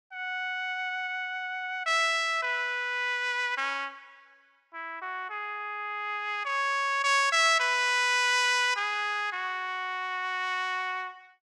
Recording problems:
none

